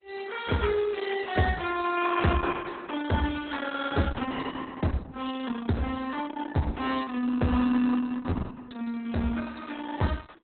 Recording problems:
codec artefacts; AAC, then Opus, log-spectral distance 5 dB, nothing above 3.8 kHz

